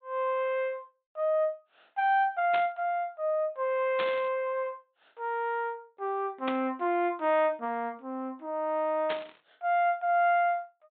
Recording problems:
treble missing; nothing above 4 kHz
static burst; 4 times, first at 2.5 s; peak -2 dB vs average level

